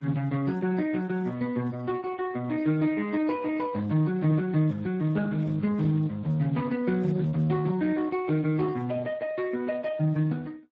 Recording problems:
lossy compression; MP3, then Speex, log-spectral distance 3 dB, nothing above 16 kHz

